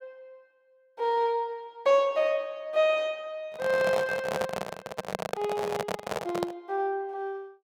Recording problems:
handling noise; from 3.5 to 6.5 s; peak +2 dB vs average level

